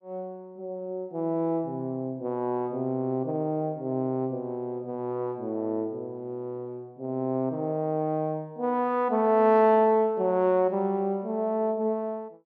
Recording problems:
none

